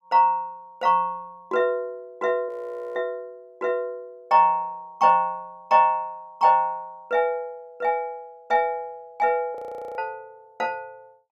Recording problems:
frozen audio; at 2.5 s and at 9.5 s

